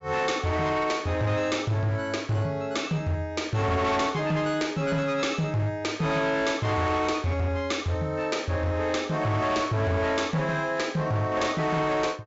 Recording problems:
low-pass filter; nothing above 8 kHz
distortion; hard clipping, signal-to-distortion ratio 10 dB

